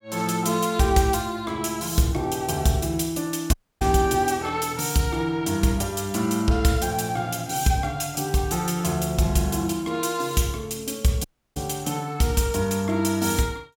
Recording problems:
dropout; at 3.5 s and at 11 s

